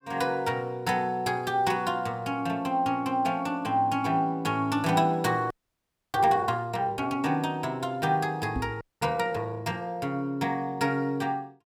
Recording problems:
frozen audio; at 5.5 s for 0.5 s and at 9 s
microphone thump; at 8.5 s; peak -1 dB vs average level

